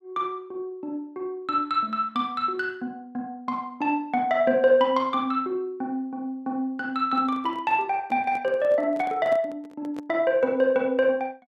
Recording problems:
microphone handling noise; from 7 to 10 s; peak -9 dB vs average level

